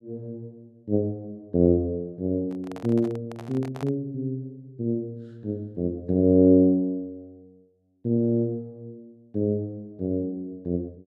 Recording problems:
microphone handling noise; from 2.5 to 4 s; peak -11 dB vs average level

